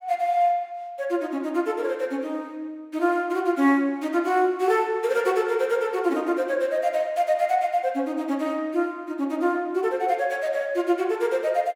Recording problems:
none

